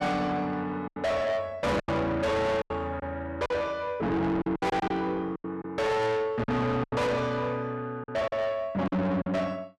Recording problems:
distortion; soft clipping, signal-to-distortion ratio 6 dB
packet loss; 9% of the sound replaced, filled with silence

